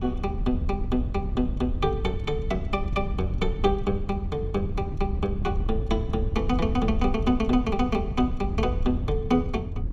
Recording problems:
wind noise; below 90 Hz, SNR 3 dB

